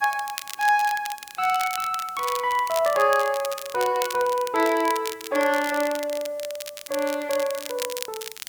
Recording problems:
hiss; SNR 28 dB
crackling; vinyl, SNR 11 dB

